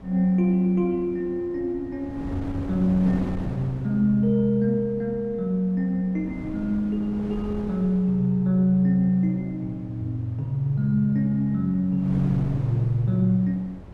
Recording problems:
wind on the microphone; below 330 Hz, SNR 15 dB

